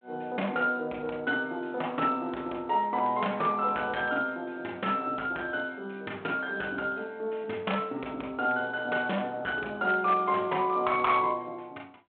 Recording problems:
telephone audio; 300 Hz to 3.6 kHz, G.726
distorted audio; hard clipping, signal-to-distortion ratio 13 dB

